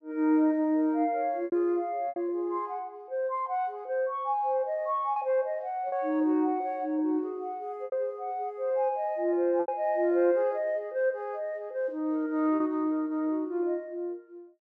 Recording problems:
packet loss; 3% of the sound replaced, filled with repeated pitch periods

